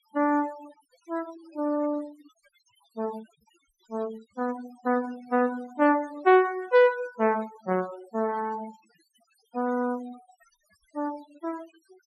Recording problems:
noise reduction artefacts; signal-to-artefact ratio 21 dB

